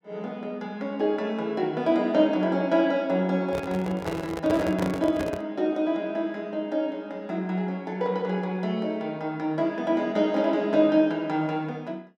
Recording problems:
microphone handling noise; from 3.5 to 5.5 s; peak -2 dB vs average level

